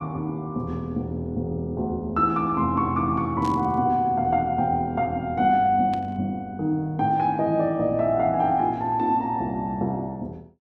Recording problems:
burst of static; at 3.5 s and at 6 s; peak -13 dB vs average level

